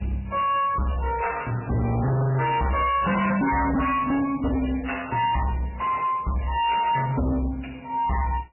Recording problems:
lossy compression; MP3, log-spectral distance 8 dB, nothing above 2.8 kHz
distortion; hard clipping, signal-to-distortion ratio 5 dB

